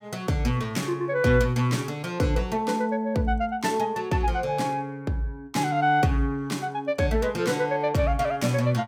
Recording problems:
none

